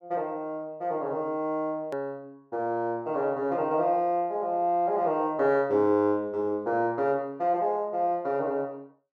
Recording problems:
click at an edit; at 2 s

